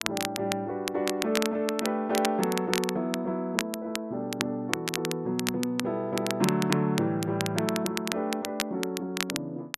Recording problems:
crackle; vinyl, SNR 5 dB

